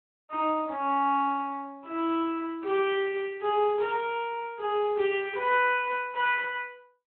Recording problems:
phone line; 280 Hz to 3.3 kHz, Speex

